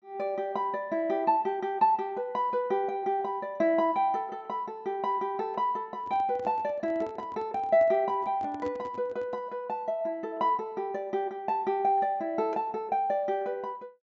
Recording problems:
treble cut off; nothing above 8 kHz
microphone handling noise; from 6 to 9.5 s; peak -8 dB vs average level

